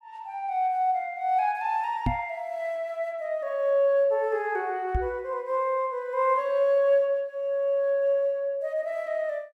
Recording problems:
microphone thump; at 2 s and at 5 s; peak +3 dB vs average level

